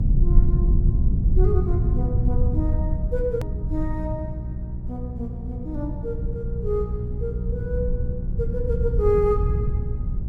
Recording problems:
mains hum; 60 Hz, harmonics up to 420 Hz, SNR 4 dB
rumble; below 92 Hz, SNR -4 dB
click at an edit; at 3.5 s

